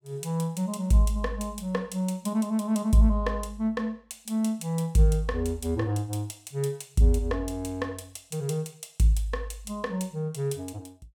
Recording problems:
none

